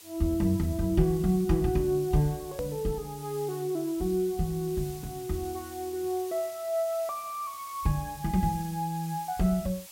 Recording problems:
background hiss; slope +1 dB per octave, SNR 16 dB
hard cut with a click; at 2.5 s

